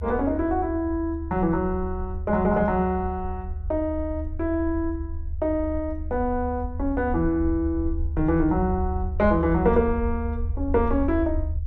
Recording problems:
rumble; below 76 Hz, SNR 7 dB

